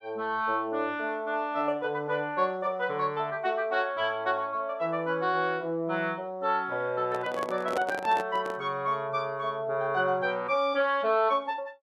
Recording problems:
microphone handling noise; from 7 to 8.5 s; peak -1 dB vs average level

